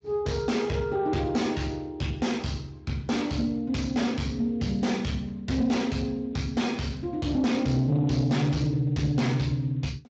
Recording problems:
codec artefacts; Speex, log-spectral distance 2 dB, nothing above 17.7 kHz
distorted audio; soft clipping, signal-to-distortion ratio 7 dB

